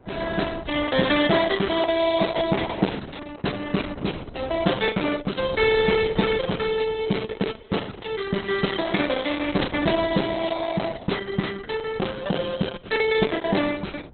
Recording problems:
lossy compression; Opus, log-spectral distance 6 dB, nothing above 4 kHz
wind on the microphone; below 480 Hz, SNR 20 dB
packet loss; 5% of the sound replaced, filled with the last packet

